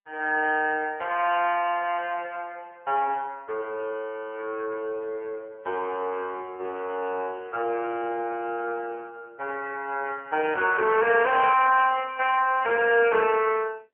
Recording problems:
telephone audio; 340 Hz to 3.1 kHz, AMR-NB

